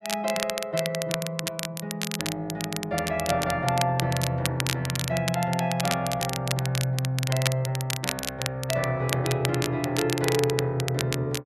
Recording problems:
crackle; vinyl, SNR 5 dB

